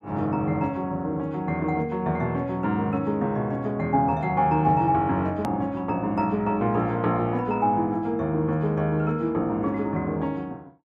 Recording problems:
edit click; at 5.5 s

